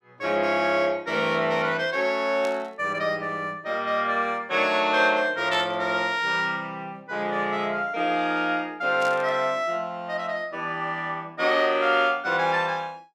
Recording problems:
burst of static; at 2.5 s, at 5.5 s and at 9 s; peak -8 dB vs average level

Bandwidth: 14.5 kHz